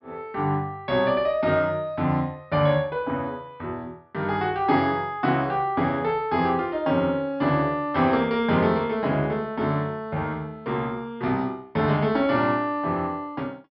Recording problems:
treble cut off; nothing above 5.3 kHz

